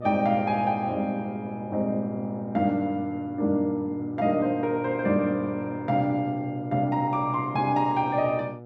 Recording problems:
electrical hum; 60 Hz, harmonics up to 840 Hz, SNR 13 dB

